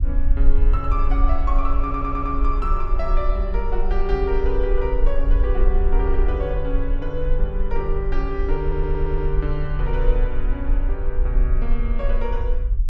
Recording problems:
rumble; below 42 Hz, strongest tone 20 Hz, SNR -3 dB
stutter; at 2 s and at 8.5 s

